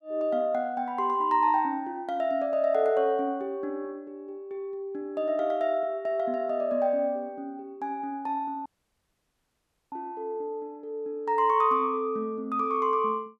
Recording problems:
dropout; at 8.5 s for 1.5 s

